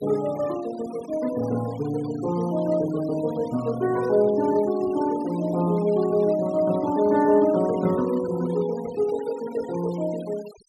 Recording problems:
denoising artefacts; signal-to-artefact ratio 19 dB

